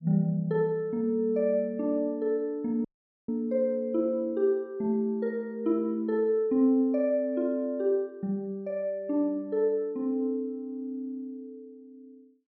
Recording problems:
audio cutting out; at 3 s

